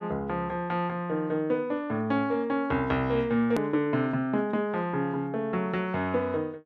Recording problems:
click at an edit; at 3.5 s

